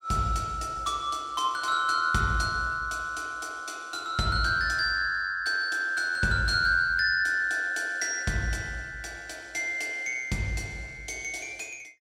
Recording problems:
none

